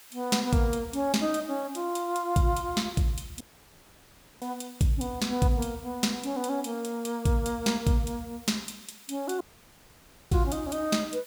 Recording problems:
background hiss; slope +1 dB per octave, SNR 21 dB
audio cutting out; at 3.5 s for 1 s and at 9.5 s for 1 s

